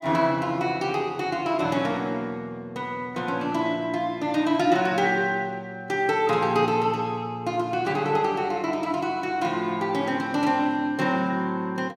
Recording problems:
none

